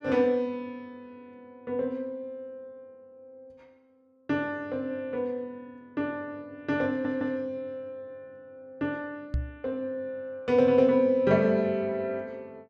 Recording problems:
audio stuttering; at 7 s
knock on the microphone; at 9.5 s; peak +2 dB vs average level

